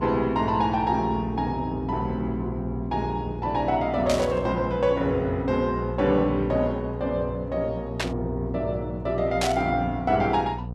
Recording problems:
hum; 60 Hz, harmonics up to 780 Hz, SNR 9 dB
burst of static; at 4 s, at 8 s and at 9.5 s; peak +2 dB vs average level

